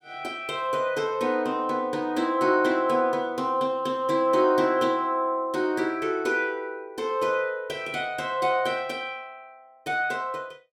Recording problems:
none

